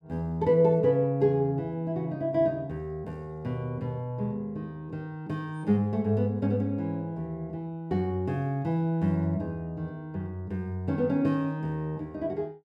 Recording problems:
none

